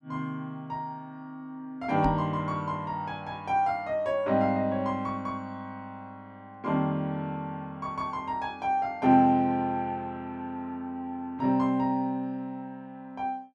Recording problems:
knock on the microphone; at 2 s; peak +3 dB vs average level

